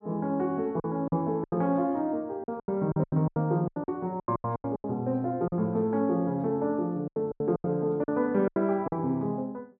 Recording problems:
packet loss; 14% of the sound replaced, filled with silence

